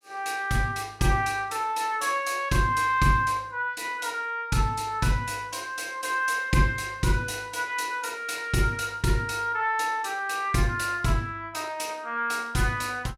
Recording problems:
none

